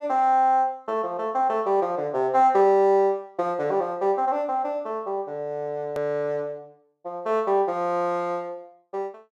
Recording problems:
edit click; at 6 s

